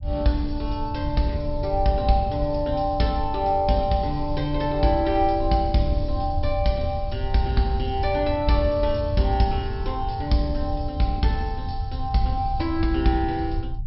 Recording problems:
low-pass filter; nothing above 5.4 kHz
rumble; below 88 Hz, SNR 7 dB

